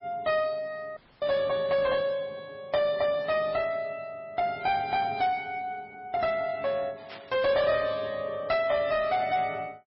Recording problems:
lossy codec; MP3, log-spectral distance 2 dB, nothing above 5.2 kHz
distortion; soft clipping, signal-to-distortion ratio 11 dB
audio cutting out; at 1 s
static burst; at 7 s; peak -12 dB vs average level

